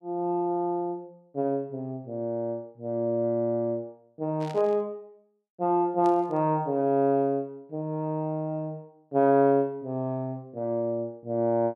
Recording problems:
static burst; at 4.5 s and at 6 s; peak -13 dB vs average level

